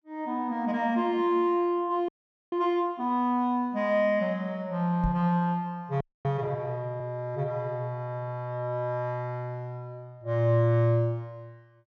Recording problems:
frozen audio; at 2 s and at 6 s
knock on the microphone; at 5 s; peak +1 dB vs average level

